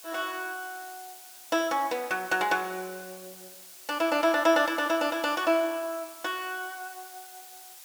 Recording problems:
hiss; SNR 17 dB

